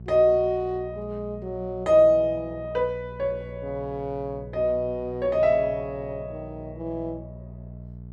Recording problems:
electrical hum; 60 Hz, harmonics up to 480 Hz, SNR 16 dB

